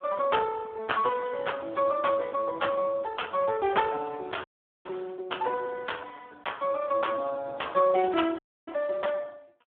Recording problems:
phone line; 260 Hz to 3.4 kHz, Speex
audio cutting out; at 4.5 s and at 8.5 s

